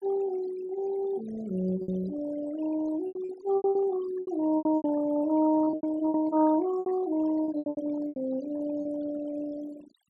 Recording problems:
denoising artefacts; signal-to-artefact ratio 17 dB
lost packets; 12% of the sound replaced, filled with repeated pitch periods

